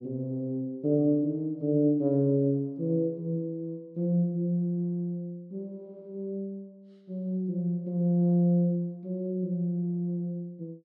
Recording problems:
none

